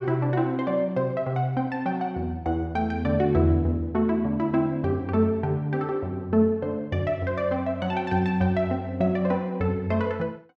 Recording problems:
none

